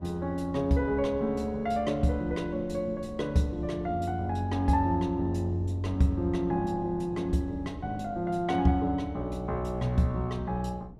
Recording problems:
wind on the microphone; below 250 Hz, SNR 19 dB

